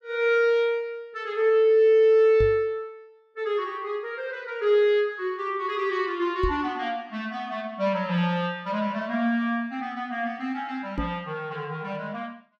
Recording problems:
microphone bump; at 2.5 s, at 6.5 s and at 11 s; peak -1 dB vs average level

